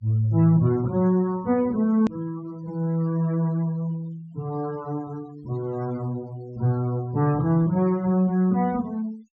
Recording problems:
treble missing; nothing above 8 kHz
noise reduction artefacts; signal-to-artefact ratio 25 dB
edit click; at 2 s

